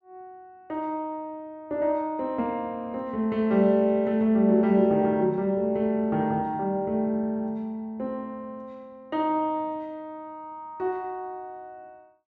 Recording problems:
none

